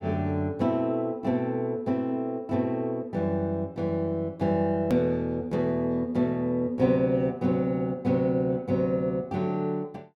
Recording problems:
hard cut with a click; at 5 s

